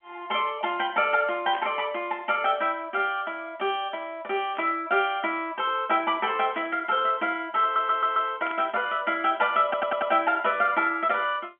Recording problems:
telephone audio; 220 Hz to 3.4 kHz, G.711
static burst; 4 times, first at 1.5 s; peak -10 dB vs average level
audio stuttering; at 7.5 s and at 9.5 s

